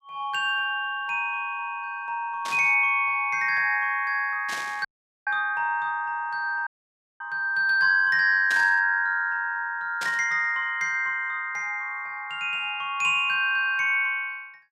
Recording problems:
static burst; 4 times, first at 2.5 s; peak -5 dB vs average level
dropout; at 5 s and at 6.5 s for 0.5 s

